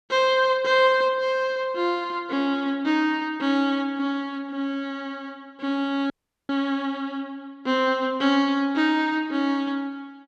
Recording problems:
audio cutting out; at 6 s

